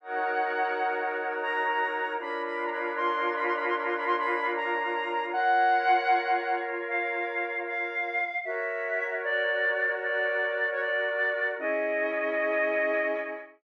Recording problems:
none

